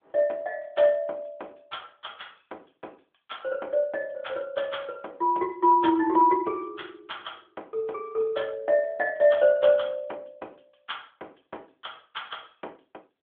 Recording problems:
phone line; 280 Hz to 3.5 kHz, AMR-NB

